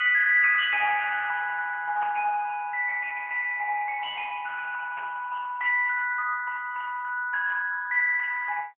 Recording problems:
telephone audio; 990 Hz to 2.4 kHz, AMR-NB
static burst; at 2 s, at 5 s and at 7.5 s; peak -12 dB vs average level

